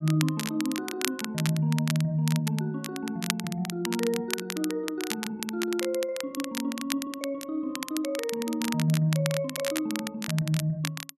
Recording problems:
crackle; vinyl, SNR 6 dB

